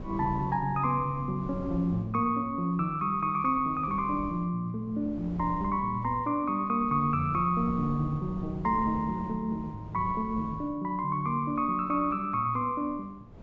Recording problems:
low-pass filter; nothing above 8 kHz
wind on the microphone; below 260 Hz, SNR 15 dB

